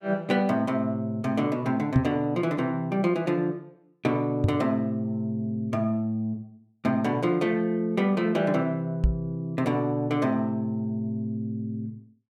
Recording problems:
microphone bump; at 2 s, at 4.5 s and at 9 s; peak +7 dB vs average level

